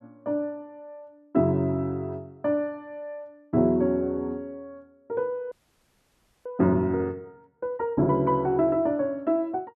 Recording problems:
audio freezing; at 5.5 s for 1 s

